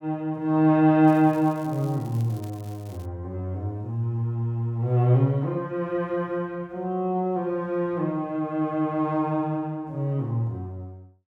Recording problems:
crackling; from 1 to 3 s; loose cable, SNR 27 dB

